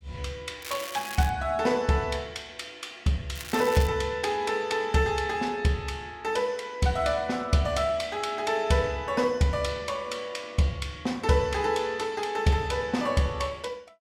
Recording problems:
crackle; at 0.5 s and at 3.5 s; loose cable, SNR 12 dB

